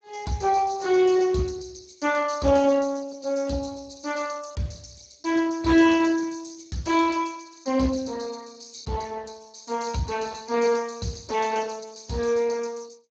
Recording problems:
codec artefacts; Speex, log-spectral distance 8 dB

